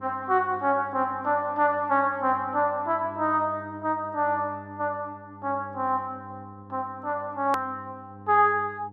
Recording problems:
mains hum; 50 Hz, harmonics up to 900 Hz, SNR 20 dB
hard cut with a click; at 7.5 s

